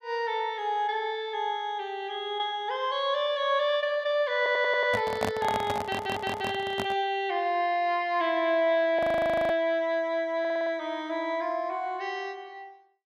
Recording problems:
stutter; at 4.5 s, at 6 s and at 10 s
microphone handling noise; from 4.5 to 7 s; peak +3 dB vs average level
audio freezing; at 9 s for 0.5 s

